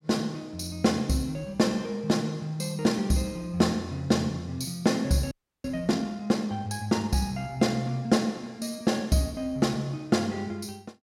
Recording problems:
frozen audio; at 5.5 s

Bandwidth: 16.5 kHz